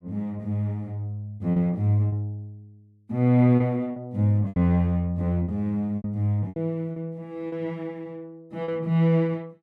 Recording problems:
packet loss; 7% of the sound replaced, filled with repeated pitch periods

